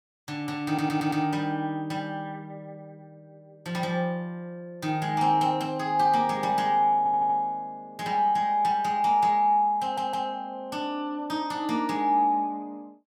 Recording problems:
audio stuttering; at 0.5 s, at 7 s and at 10 s

